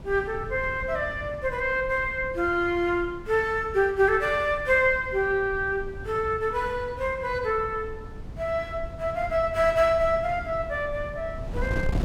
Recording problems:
wind on the microphone; below 160 Hz, SNR 14 dB

